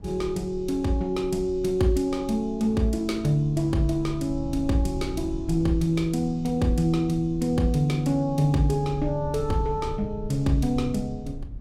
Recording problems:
rumble; below 90 Hz, SNR 14 dB

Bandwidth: 16 kHz